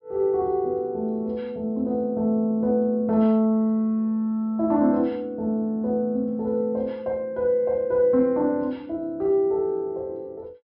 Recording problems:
low-pass filter; nothing above 5.5 kHz

